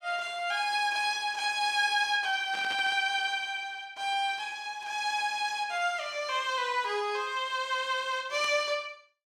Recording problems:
burst of static; at 2.5 s and at 8.5 s; peak -7 dB vs average level

